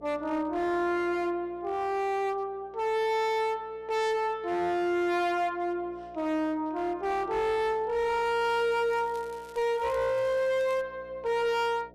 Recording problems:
distortion; hard clipping, signal-to-distortion ratio 7 dB
mains hum; 60 Hz, harmonics up to 720 Hz, SNR 26 dB
crackle; from 8.5 to 11 s; loose cable, SNR 27 dB

